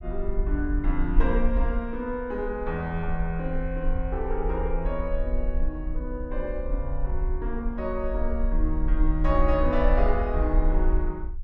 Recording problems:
rumble; below 48 Hz, SNR 0 dB

